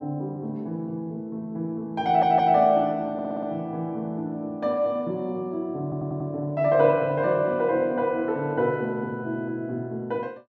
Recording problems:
stutter; at 2 s, at 3 s and at 6 s

